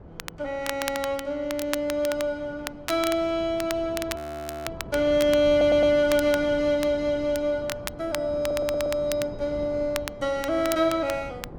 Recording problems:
wind noise; below 440 Hz, SNR 17 dB
crackle; vinyl, SNR 12 dB
frozen audio; at 4 s for 0.5 s
audio stuttering; at 5.5 s and at 8.5 s

